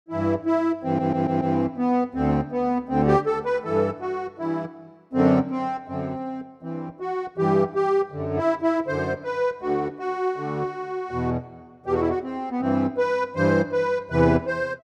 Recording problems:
stutter; at 1 s

